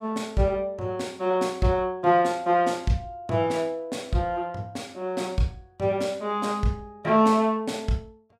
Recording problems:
none

